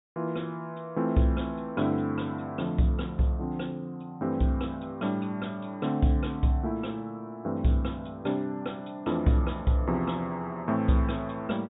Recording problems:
low-pass filter; nothing above 4 kHz

